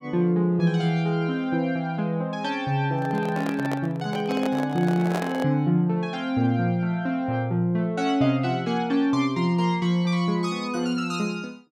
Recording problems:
handling noise; from 3 to 5.5 s; peak -1 dB vs average level

